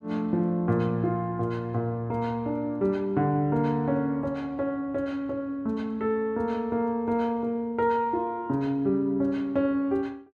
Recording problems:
none

